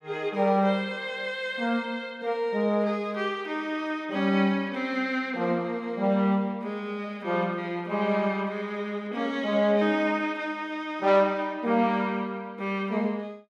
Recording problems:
none

